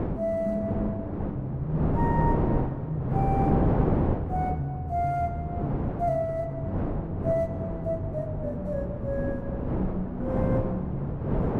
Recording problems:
wind on the microphone; below 420 Hz, SNR 0 dB

